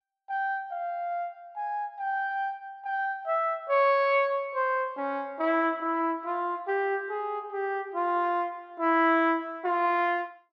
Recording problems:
none

